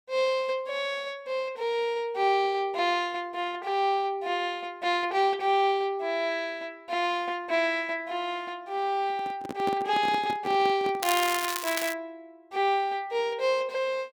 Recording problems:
microphone handling noise; from 9 to 11 s; peak -2 dB vs average level
crackle; at 11 s; loose cable, SNR 4 dB

